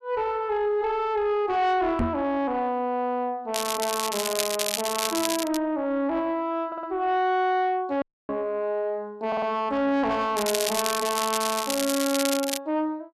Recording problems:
distorted audio; soft clipping, signal-to-distortion ratio 12 dB
knock on the microphone; at 2 s; peak +3 dB vs average level
crackle; from 3.5 to 5.5 s and from 10 to 13 s; loose cable, SNR 3 dB
audio stuttering; at 6.5 s and at 9.5 s
audio cutting out; at 8 s

